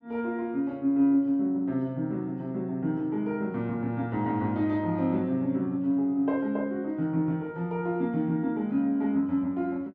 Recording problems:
none

